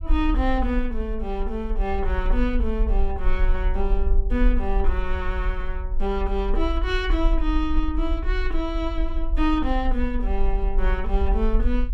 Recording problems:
rumble; below 44 Hz, SNR 0 dB

